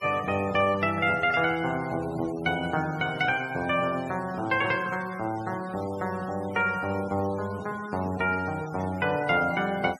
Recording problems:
denoising artefacts; signal-to-artefact ratio 19 dB

